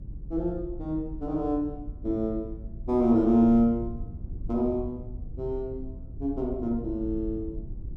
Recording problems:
rumble; below 90 Hz, SNR 12 dB

